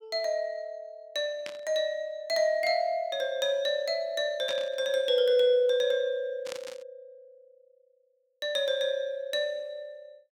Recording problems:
static burst; at 1.5 s, at 4.5 s and at 6.5 s; peak -6 dB vs average level

